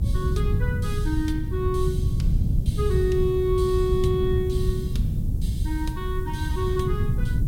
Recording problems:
hiss; SNR 26 dB
rumble; below 66 Hz, SNR 5 dB
wind noise; below 140 Hz, SNR -1 dB

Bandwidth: 16.5 kHz